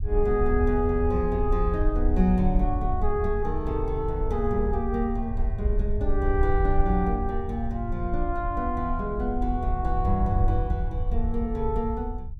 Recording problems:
rumble; below 66 Hz, SNR 2 dB

